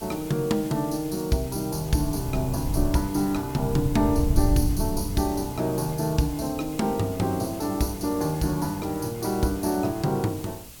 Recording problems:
hiss; SNR 16 dB
wind on the microphone; below 100 Hz, SNR 4 dB

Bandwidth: 18 kHz